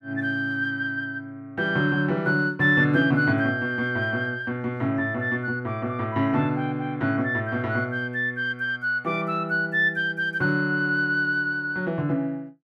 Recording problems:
none

